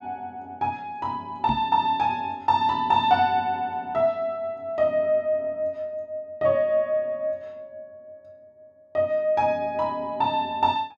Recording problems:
microphone thump; at 1.5 s; peak -2 dB vs average level

